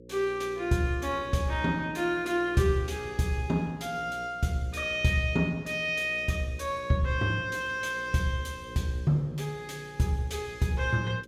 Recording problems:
hum; 60 Hz, harmonics up to 540 Hz, SNR 19 dB

